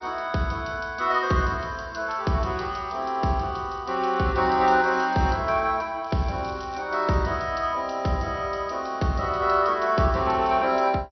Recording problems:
lossy compression; MP2, log-spectral distance 4 dB, nothing above 5.8 kHz
crackle; at 6 s; loose cable, SNR 27 dB

